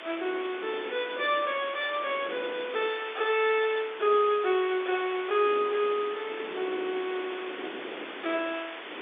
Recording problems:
telephone audio; 280 Hz to 3.6 kHz, G.711
background hiss; SNR 12 dB
wind noise; below 530 Hz, SNR 15 dB

